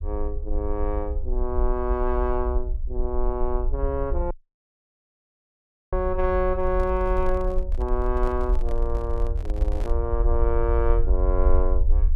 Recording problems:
rumble; below 52 Hz, SNR 0 dB
audio cutting out; at 4.5 s for 1.5 s
handling noise; from 6.5 to 10 s; peak -8 dB vs average level

